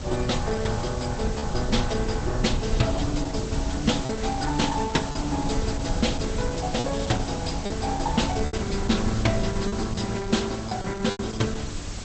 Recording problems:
codec artefacts; Opus, log-spectral distance 9 dB, nothing above 8.2 kHz
background hiss; slope -2 dB per octave, SNR 11 dB
low-frequency rumble; below 100 Hz, SNR 7 dB
wind on the microphone; below 120 Hz, SNR 10 dB
lost packets; 4% of the sound replaced, filled with repeated pitch periods

